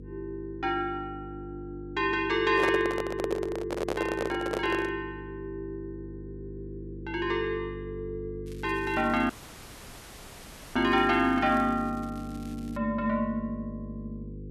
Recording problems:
hum; 50 Hz, harmonics up to 500 Hz, SNR 13 dB
handling noise; from 2.5 to 5 s; peak +2 dB vs average level
crackle; from 8.5 to 13 s; loose cable, SNR 25 dB
audio cutting out; at 9.5 s for 1.5 s

